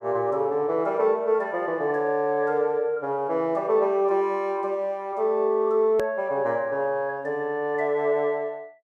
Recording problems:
click at an edit; at 6 s

